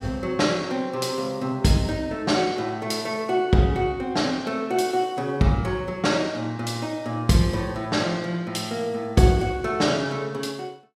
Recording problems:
none

